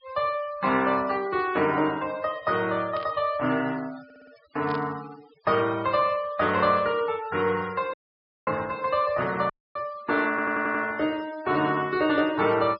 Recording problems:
treble cut off; nothing above 5.5 kHz
denoising artefacts; signal-to-artefact ratio 20 dB
burst of static; at 3 s and at 4.5 s; peak -12 dB vs average level
audio stuttering; at 4 s and at 10 s
audio cutting out; at 8 s for 0.5 s and at 9.5 s

